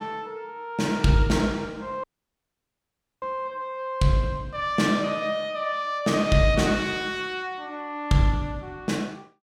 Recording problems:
dropout; at 2 s for 1 s

